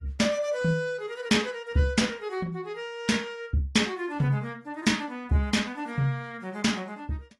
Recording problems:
lossy compression; AAC, log-spectral distance 2 dB, nothing above 11.3 kHz

